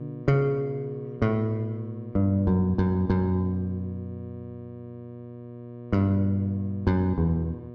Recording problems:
hum; 60 Hz, harmonics up to 1.1 kHz, SNR 15 dB

